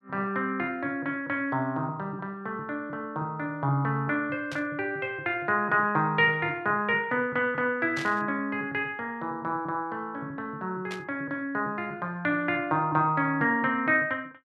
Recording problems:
static burst; at 4.5 s, at 8 s and at 11 s; peak -5 dB vs average level

